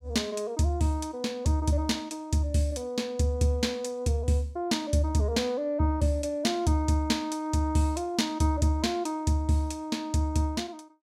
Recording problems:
none

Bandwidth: 16 kHz